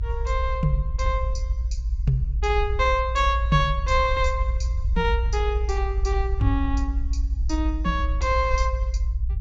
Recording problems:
treble cut off; nothing above 8 kHz
rumble; below 60 Hz, strongest tone 58 Hz, SNR 1 dB

